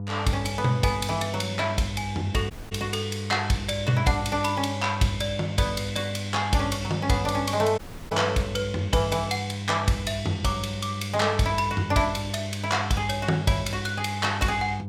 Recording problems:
hum; 50 Hz, harmonics up to 700 Hz, SNR 7 dB
audio cutting out; at 2.5 s and at 8 s

